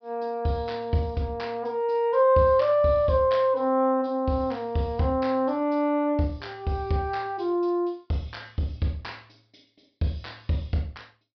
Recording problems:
treble missing; nothing above 5.5 kHz

